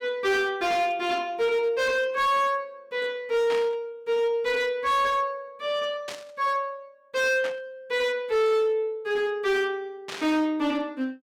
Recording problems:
distorted audio; hard clipping, signal-to-distortion ratio 10 dB
static burst; 4 times, first at 3.5 s; peak -6 dB vs average level

